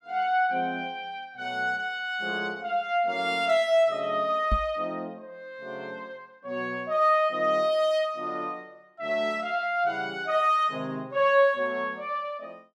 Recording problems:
knock on the microphone; at 4.5 s; peak +2 dB vs average level

